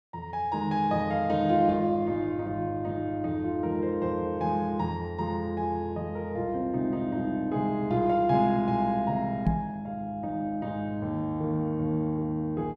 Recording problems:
microphone bump; at 9.5 s; peak +6 dB vs average level

